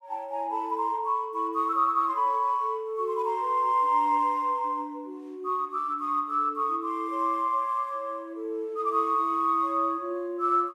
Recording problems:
none

